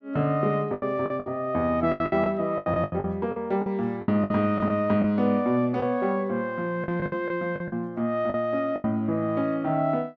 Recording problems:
lost packets; 12% of the sound replaced, filled with the last packet

